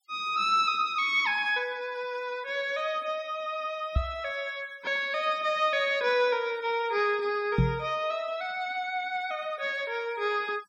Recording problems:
denoising artefacts; signal-to-artefact ratio 25 dB
microphone thump; at 4 s and at 7.5 s; peak +7 dB vs average level

